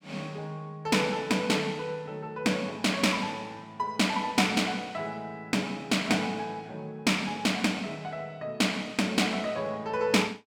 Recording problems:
none

